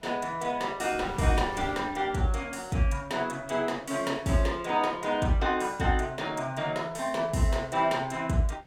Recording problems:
wind on the microphone; below 530 Hz, SNR 20 dB

